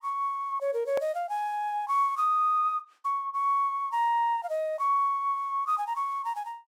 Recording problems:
hard cut with a click; at 1 s

